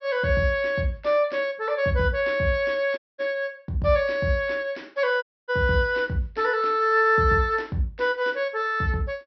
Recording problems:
treble missing; nothing above 5.8 kHz
dropout; at 3 s and at 5 s

